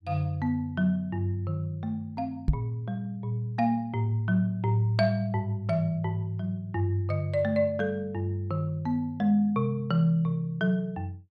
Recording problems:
microphone thump; at 2.5 s; peak +7 dB vs average level

